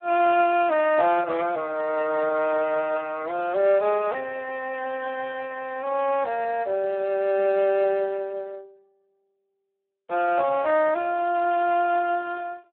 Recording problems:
phone line; 320 Hz to 3.2 kHz, Speex

